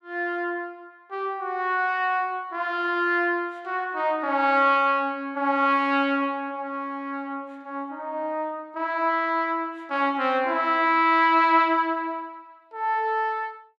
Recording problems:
none

